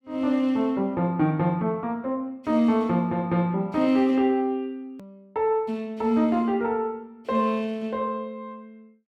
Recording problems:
edit click; at 5 s

